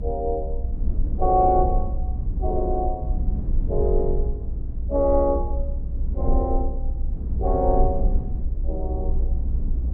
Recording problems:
rumble; below 60 Hz, strongest tone 24 Hz, SNR 2 dB

